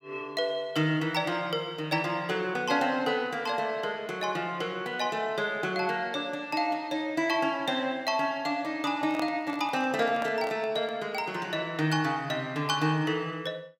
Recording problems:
microphone handling noise; from 9 to 11 s; peak -2 dB vs average level

